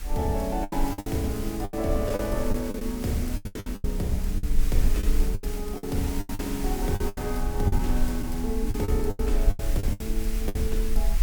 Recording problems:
hiss; slope -1 dB per octave, SNR 10 dB
rumble; below 48 Hz, strongest tone 24 Hz, SNR 2 dB
lost packets; 14% of the sound replaced, filled with the last packet

